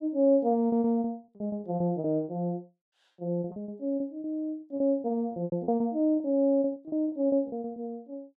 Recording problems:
packet loss; 17% of the sound replaced, filled with repeated pitch periods

